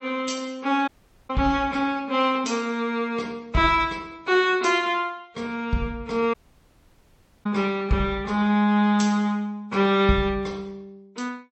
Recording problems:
lossy compression; MP3, log-spectral distance 2 dB, nothing above 7.8 kHz
audio cutting out; at 1 s and at 6.5 s for 1 s

